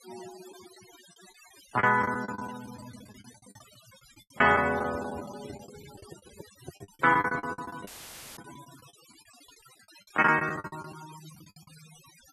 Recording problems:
denoising artefacts; signal-to-artefact ratio 19 dB
lost packets; 15% of the sound replaced, filled with the last packet
microphone handling noise; from 4.5 to 8.5 s; peak -12 dB vs average level
audio cutting out; at 8 s; filled with static

